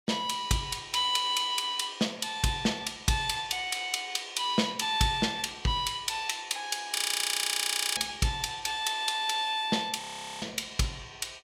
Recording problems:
audio freezing; at 7 s for 1 s and at 10 s

